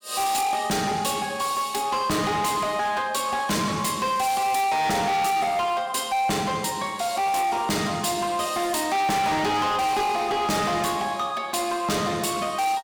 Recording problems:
distorted audio; hard clipping, signal-to-distortion ratio 6 dB

